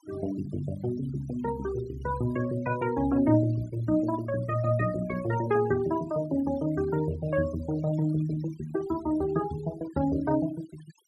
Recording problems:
noise reduction artefacts; signal-to-artefact ratio 18 dB

